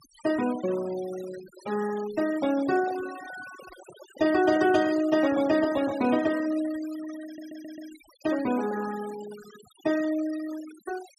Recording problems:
denoising artefacts; signal-to-artefact ratio 17 dB
microphone handling noise; from 2.5 to 6.5 s; peak -10 dB vs average level
audio stuttering; at 7.5 s

